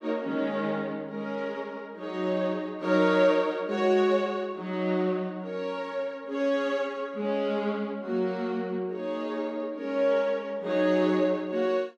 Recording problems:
none

